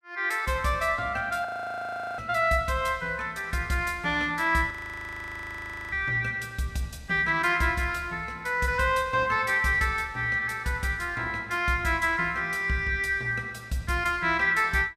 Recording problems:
frozen audio; at 1.5 s for 0.5 s and at 4.5 s for 1 s

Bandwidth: 15.5 kHz